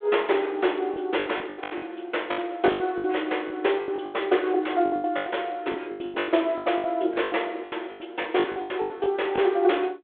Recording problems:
telephone audio; 280 Hz to 3.6 kHz, G.726
lost packets; 19% of the sound replaced, filled with the last packet

